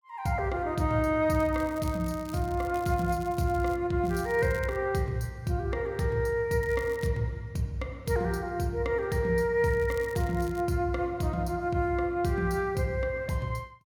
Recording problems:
crackling; 4 times, first at 1.5 s; loose cable, SNR 23 dB

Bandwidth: 18 kHz